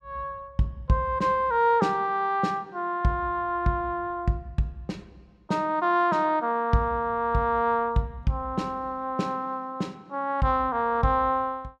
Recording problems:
none

